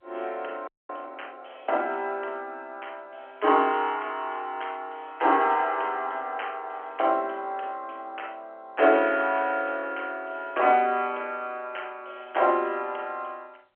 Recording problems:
phone line; 340 Hz to 3.4 kHz, G.711
audio freezing; at 0.5 s

